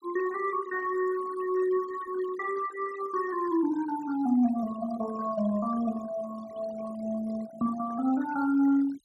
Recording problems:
denoising artefacts; signal-to-artefact ratio 17 dB

